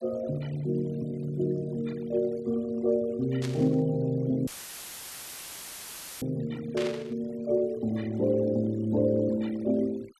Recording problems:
noise reduction artefacts; signal-to-artefact ratio 23 dB
burst of static; at 3.5 s and at 7 s; peak -5 dB vs average level
audio cutting out; at 4.5 s for 2 s; filled with static

